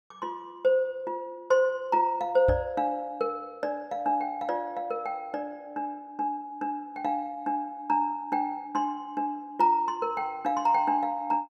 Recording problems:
microphone thump; at 2.5 s; peak +2 dB vs average level

